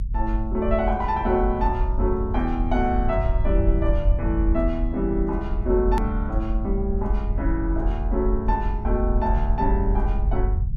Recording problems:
low-frequency rumble; below 60 Hz, strongest tone 46 Hz, SNR 0 dB
click at an edit; at 6 s

